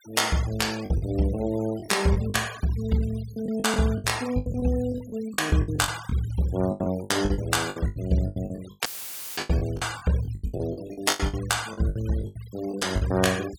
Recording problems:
noise reduction artefacts; signal-to-artefact ratio 16 dB
packet loss; 16% of the sound replaced, filled with the last packet
audio cutting out; at 9 s for 0.5 s; filled with static

